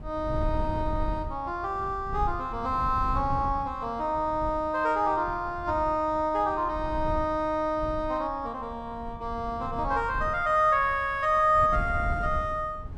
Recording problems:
wind noise; below 110 Hz, SNR 11 dB

